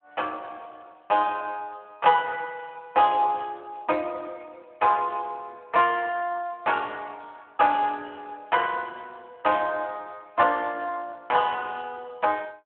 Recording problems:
phone line; 320 Hz to 3.3 kHz, Speex

